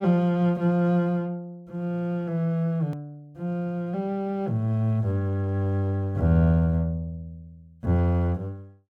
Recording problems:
hard cut with a click; at 3 s

